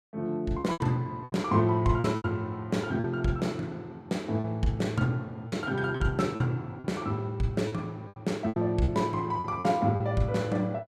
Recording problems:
lost packets; 9% of the sound replaced, filled with repeated pitch periods

